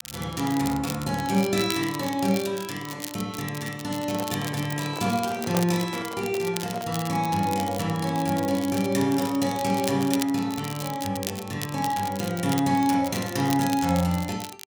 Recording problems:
crackling; vinyl, SNR 11 dB
microphone handling noise; from 4 to 7 s; peak -4 dB vs average level

